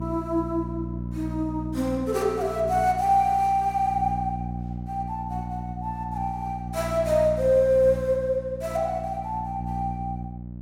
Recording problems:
hum; 60 Hz, harmonics up to 600 Hz, SNR 9 dB

